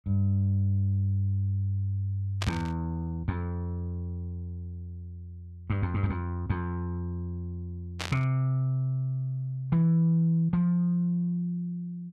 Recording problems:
static burst; at 2.5 s and at 8 s; peak -1 dB vs average level

